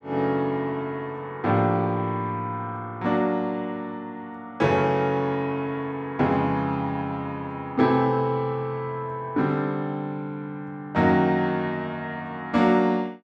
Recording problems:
none

